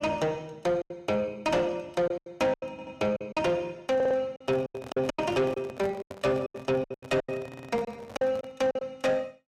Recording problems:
distortion; soft clipping, signal-to-distortion ratio 11 dB
packet loss; 14% of the sound replaced, filled with silence
stutter; at 2.5 s, at 4 s and at 7.5 s
microphone handling noise; from 4.5 to 8.5 s; peak -7 dB vs average level

